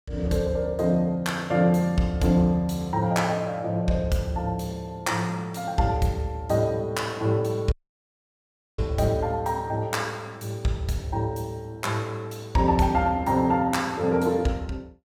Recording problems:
dropout; at 7.5 s for 1 s

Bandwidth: 17 kHz